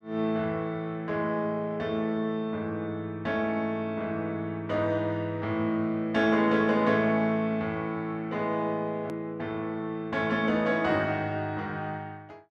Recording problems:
click at an edit; at 9 s

